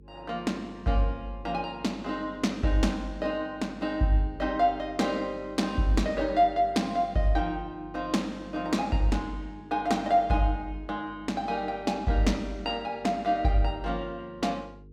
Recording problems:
hum; 50 Hz, harmonics up to 450 Hz, SNR 22 dB

